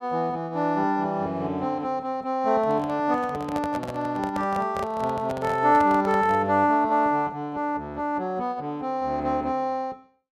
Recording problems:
handling noise; from 2.5 to 6.5 s; peak -5 dB vs average level

